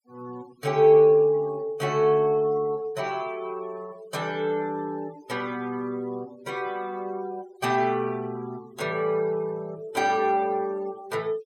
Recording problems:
noise reduction artefacts; signal-to-artefact ratio 25 dB

